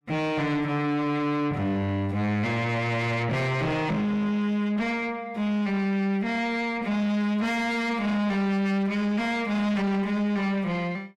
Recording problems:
distorted audio; soft clipping, signal-to-distortion ratio 6 dB

